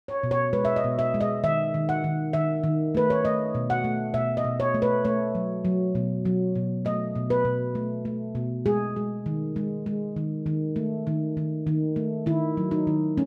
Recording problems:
none

